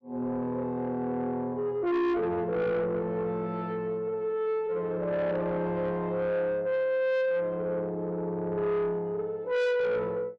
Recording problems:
distortion; soft clipping, signal-to-distortion ratio 7 dB

